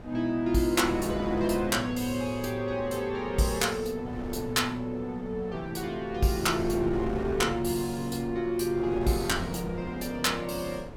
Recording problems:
wind noise; below 550 Hz, SNR 11 dB

